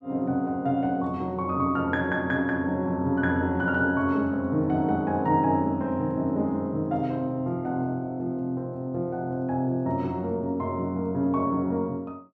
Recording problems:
none

